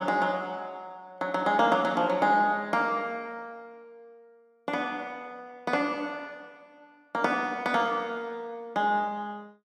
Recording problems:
none

